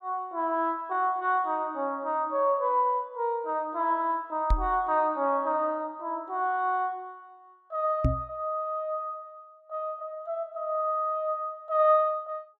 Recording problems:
knock on the microphone; at 4.5 s and at 8 s; peak +7 dB vs average level

